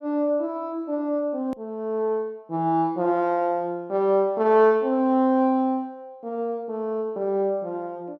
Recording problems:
hard cut with a click; at 1.5 s

